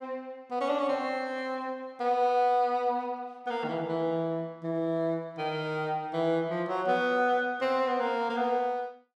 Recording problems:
none

